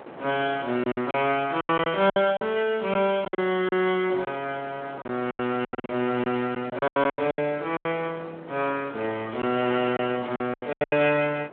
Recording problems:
telephone audio; 280 Hz to 3.3 kHz, Speex
wind on the microphone; below 1 kHz, SNR 19 dB
packet loss; 13% of the sound replaced, filled with silence

